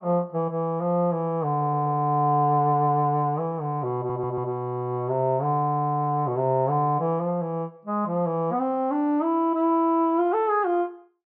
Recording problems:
low-pass filter; nothing above 6.2 kHz
audio stuttering; at 1.5 s and at 4 s

